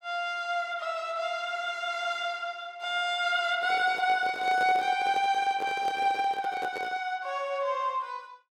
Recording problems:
handling noise; from 3.5 to 7 s; peak -5 dB vs average level

